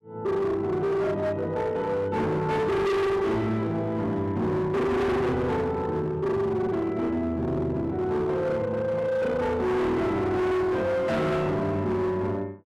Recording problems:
distortion; hard clipping, signal-to-distortion ratio 6 dB

